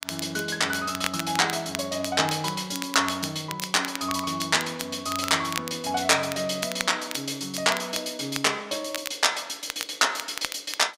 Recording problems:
crackle; vinyl, SNR 10 dB

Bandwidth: 15.5 kHz